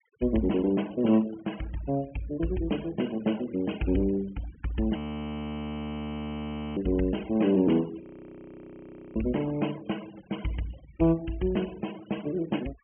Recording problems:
low-pass filter; nothing above 3.2 kHz
denoising artefacts; signal-to-artefact ratio 20 dB
frozen audio; at 5 s for 2 s and at 8 s for 1 s

